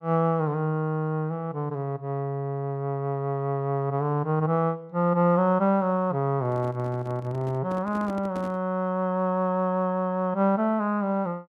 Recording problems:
microphone handling noise; from 6.5 to 8.5 s; peak -8 dB vs average level

